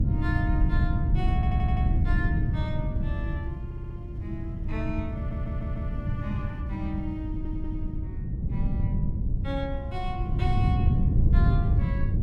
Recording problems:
wind on the microphone; below 130 Hz, SNR -9 dB
audio stuttering; 4 times, first at 1.5 s

